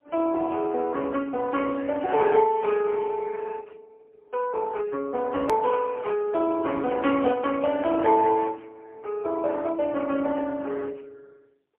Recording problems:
phone line; 300 Hz to 3.1 kHz, AMR-NB, then MP3
hard cut with a click; at 5.5 s

